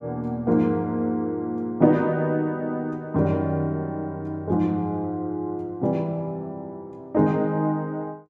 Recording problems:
none

